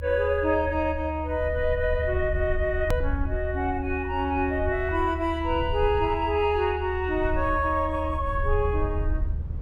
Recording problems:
rumble; below 76 Hz, SNR 6 dB
edit click; at 3 s

